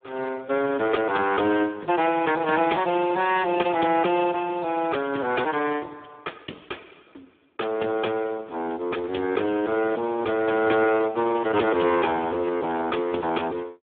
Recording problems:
telephone audio; 240 Hz to 2.3 kHz, Speex

